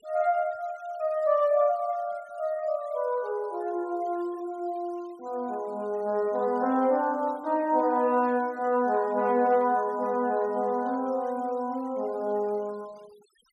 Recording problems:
denoising artefacts; signal-to-artefact ratio 27 dB

